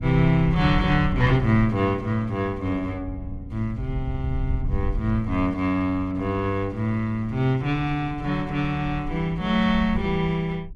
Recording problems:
wind on the microphone; below 82 Hz, SNR 10 dB

